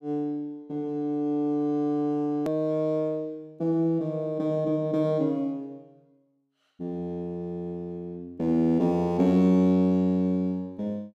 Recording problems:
edit click; at 2.5 s

